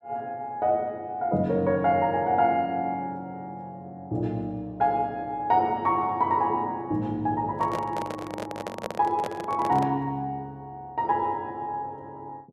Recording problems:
microphone handling noise; from 7.5 to 10 s; peak -1 dB vs average level

